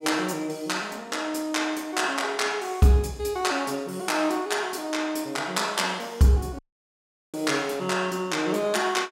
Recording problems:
audio cutting out; at 6.5 s for 1 s

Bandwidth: 16.5 kHz